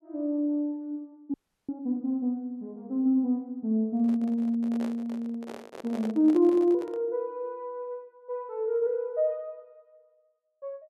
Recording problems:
frozen audio; at 1.5 s
microphone handling noise; from 4 to 7 s; peak -8 dB vs average level

